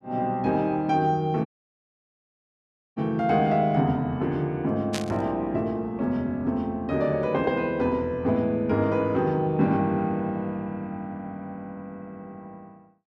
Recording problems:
audio cutting out; at 1.5 s for 1.5 s
static burst; at 5 s; peak -1 dB vs average level

